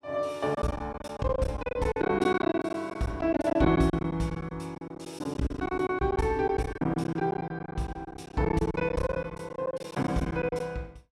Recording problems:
lost packets; 18% of the sound replaced, filled with silence

